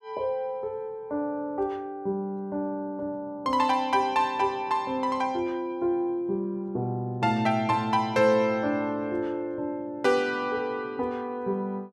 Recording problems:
none

